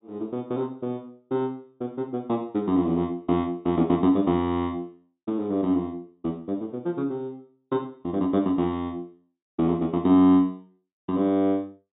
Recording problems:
treble missing; nothing above 4 kHz

